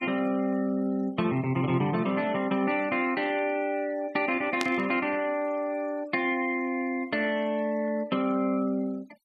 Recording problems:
noise reduction artefacts; signal-to-artefact ratio 23 dB
burst of static; at 4.5 s; peak 0 dB vs average level

